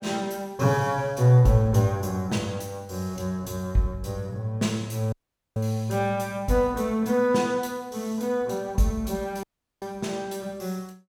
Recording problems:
dropout; at 5 s and at 9.5 s

